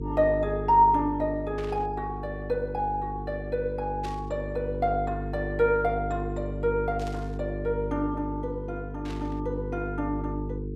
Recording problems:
electrical hum; 50 Hz, harmonics up to 450 Hz, SNR 6 dB
burst of static; 4 times, first at 1.5 s; peak -11 dB vs average level

